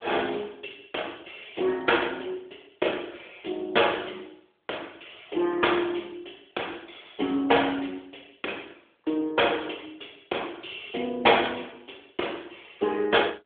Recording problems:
phone line; 280 Hz to 3.5 kHz, AMR-NB

